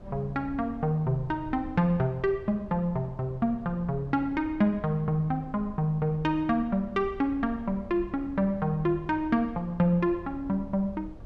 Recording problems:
rumble; below 130 Hz, SNR 18 dB

